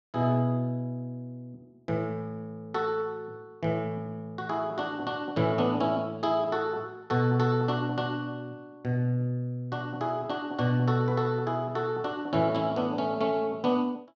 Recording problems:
none

